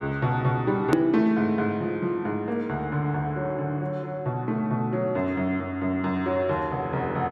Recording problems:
edit click; at 1 s

